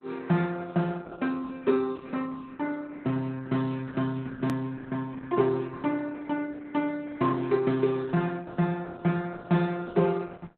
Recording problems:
lossy codec; Opus, log-spectral distance 3 dB, nothing above 13.1 kHz
edit click; at 4.5 s

